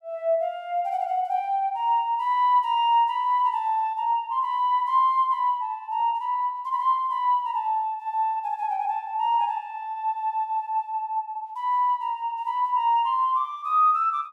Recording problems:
none

